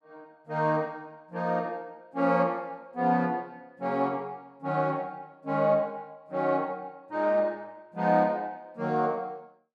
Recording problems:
none

